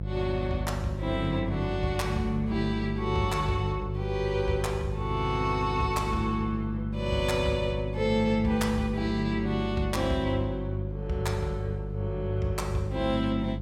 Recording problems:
electrical hum; 50 Hz, harmonics up to 550 Hz, SNR 5 dB

